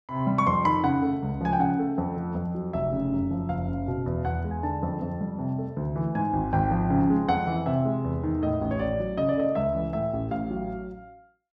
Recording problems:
none

